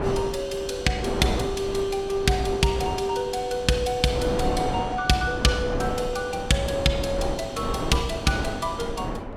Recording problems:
wind on the microphone; below 620 Hz, SNR 6 dB

